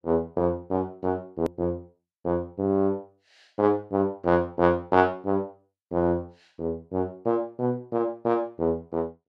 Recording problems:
edit click; at 1.5 s

